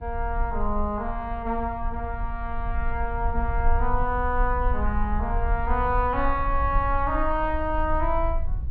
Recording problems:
treble missing; nothing above 5.1 kHz
low-frequency rumble; below 56 Hz, strongest tone 22 Hz, SNR 3 dB

